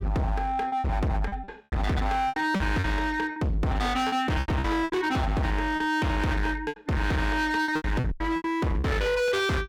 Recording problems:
distorted audio; hard clipping, uneven, signal-to-distortion ratio 7 dB
lost packets; 12% of the sound replaced, filled with repeated pitch periods

